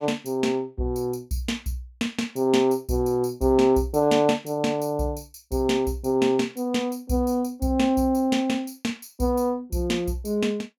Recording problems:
none

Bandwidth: 18 kHz